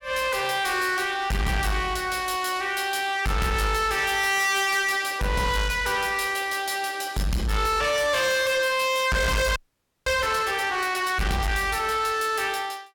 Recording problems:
distorted audio; soft clipping, signal-to-distortion ratio 7 dB
audio freezing; at 9.5 s for 0.5 s

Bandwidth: 17.5 kHz